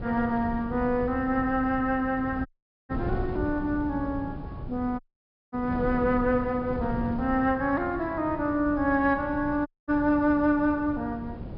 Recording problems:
low-pass filter; nothing above 5.5 kHz
wind on the microphone; below 250 Hz, SNR 11 dB
audio cutting out; at 2.5 s, at 5 s for 0.5 s and at 9.5 s

